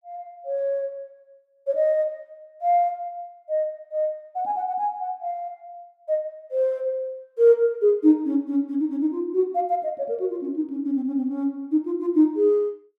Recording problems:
none

